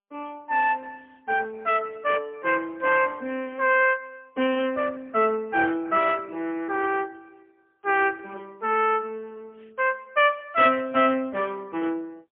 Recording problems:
telephone audio; 220 Hz to 3.3 kHz, AMR-NB, then MP3

